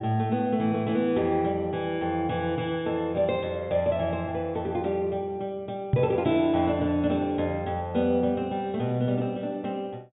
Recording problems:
treble missing; nothing above 4 kHz
microphone thump; at 6 s; peak +8 dB vs average level

